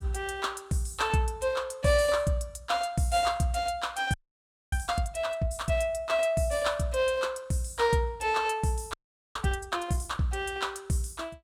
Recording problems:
audio freezing; at 4 s for 0.5 s and at 9 s

